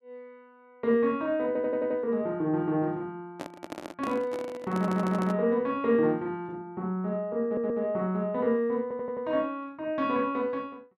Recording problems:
audio stuttering; 4 times, first at 1.5 s
handling noise; from 3.5 to 5.5 s; peak -5 dB vs average level

